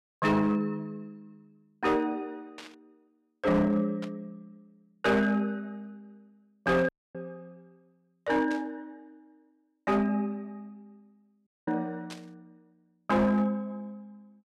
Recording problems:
distorted audio; hard clipping, signal-to-distortion ratio 11 dB
static burst; 4 times, first at 2.5 s; peak -10 dB vs average level
audio cutting out; at 7 s and at 11 s

